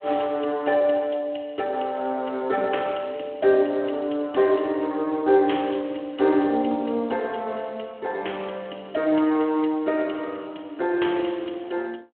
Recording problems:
phone line; 240 Hz to 3.3 kHz, Speex

